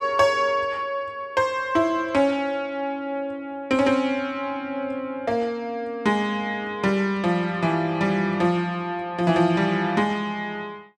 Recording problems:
none

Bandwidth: 12 kHz